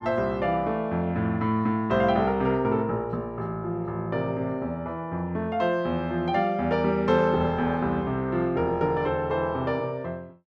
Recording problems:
none

